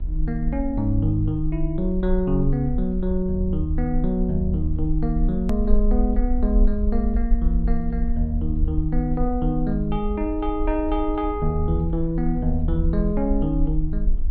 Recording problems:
low-pass filter; nothing above 4.5 kHz
hum; 60 Hz, harmonics up to 1 kHz, SNR 22 dB
low-frequency rumble; below 48 Hz, SNR 4 dB
edit click; at 5.5 s

